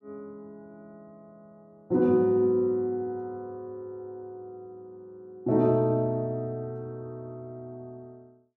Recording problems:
none

